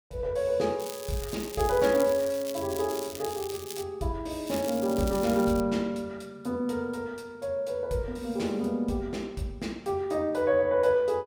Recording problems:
crackle; from 1 to 4 s and from 4.5 to 5.5 s; loose cable, SNR 12 dB

